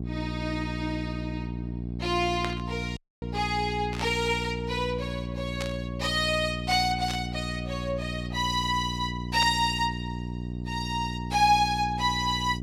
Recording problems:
hum; 60 Hz, harmonics up to 720 Hz, SNR 6 dB
burst of static; 5 times, first at 2.5 s; peak -3 dB vs average level
dropout; at 3 s

